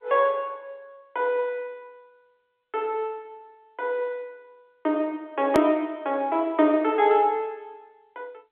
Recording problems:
telephone audio; 260 Hz to 3.6 kHz, G.711
hard cut with a click; at 5.5 s

